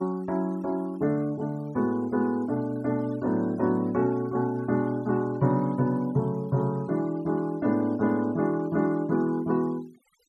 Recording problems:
noise reduction artefacts; signal-to-artefact ratio 28 dB

